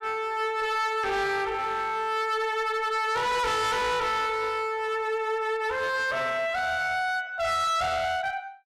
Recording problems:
distortion; hard clipping, uneven, signal-to-distortion ratio 6 dB

